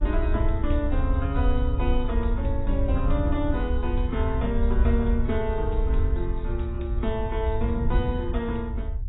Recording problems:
codec artefacts; AAC, log-spectral distance 2 dB, nothing above 3.4 kHz
low-frequency rumble; below 68 Hz, SNR -1 dB
wind noise; below 130 Hz, SNR 9 dB

